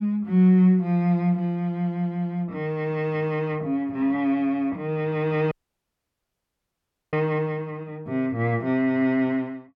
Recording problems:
audio cutting out; at 5.5 s for 1.5 s

